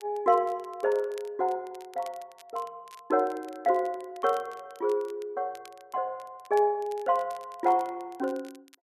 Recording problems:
crackle; vinyl, SNR 26 dB

